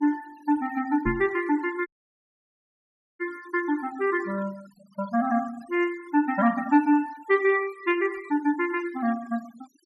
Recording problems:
noise reduction artefacts; signal-to-artefact ratio 21 dB
microphone thump; at 1 s; peak +1 dB vs average level
dropout; at 2 s for 1.5 s

